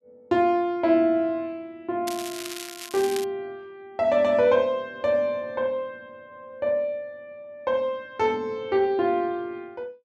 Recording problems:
crackling; from 2 to 3.5 s; loose cable, SNR 12 dB

